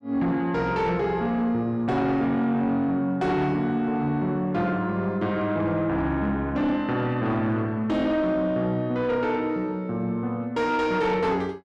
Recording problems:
distortion; soft clipping, signal-to-distortion ratio 12 dB

